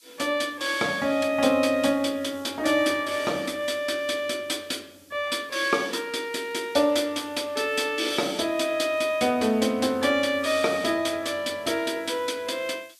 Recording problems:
hiss; SNR 27 dB

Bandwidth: 14.5 kHz